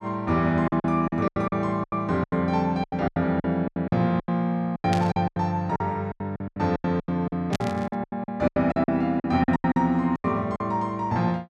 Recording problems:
lost packets; 19% of the sound replaced, filled with silence
static burst; at 5 s and at 7.5 s; peak -4 dB vs average level

